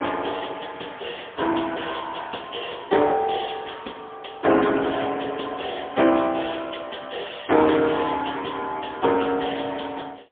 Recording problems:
phone line; 280 Hz to 3.6 kHz, AMR-NB, then MP3

